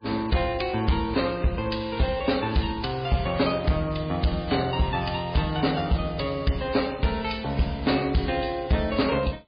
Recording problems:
lossy codec; MP3, log-spectral distance 5 dB, nothing above 4.6 kHz
distorted audio; hard clipping, signal-to-distortion ratio 12 dB

